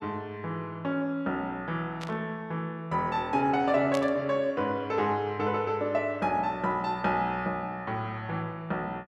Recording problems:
static burst; at 2 s and at 4 s; peak -5 dB vs average level

